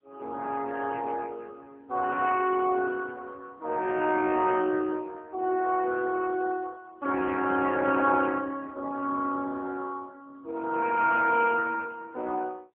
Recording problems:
telephone audio; 240 Hz to 3.3 kHz, AMR-NB

